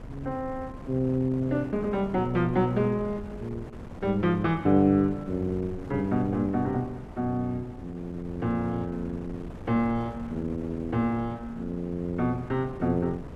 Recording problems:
wind noise; below 350 Hz, SNR 14 dB

